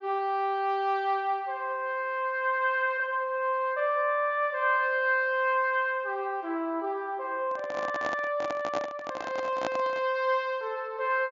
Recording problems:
treble missing; nothing above 7.2 kHz
microphone handling noise; from 7.5 to 10 s; peak +1 dB vs average level

